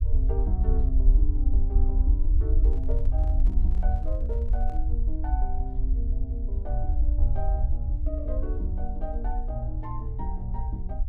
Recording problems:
low-frequency rumble; below 58 Hz, SNR -11 dB
handling noise; from 2.5 to 5 s; peak -9 dB vs average level

